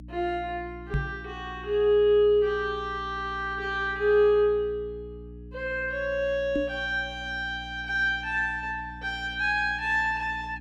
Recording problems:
hum; 60 Hz, harmonics up to 300 Hz, SNR 18 dB
microphone bump; at 1 s and at 6.5 s; peak +2 dB vs average level

